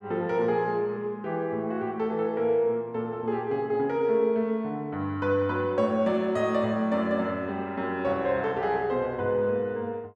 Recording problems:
none

